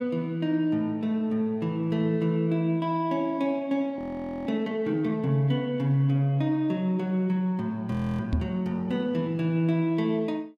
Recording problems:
frozen audio; at 4 s and at 8 s
knock on the microphone; at 8.5 s; peak +4 dB vs average level

